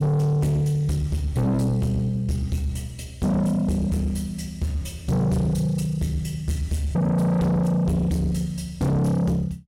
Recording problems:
distorted audio; soft clipping, signal-to-distortion ratio 6 dB

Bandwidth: 16 kHz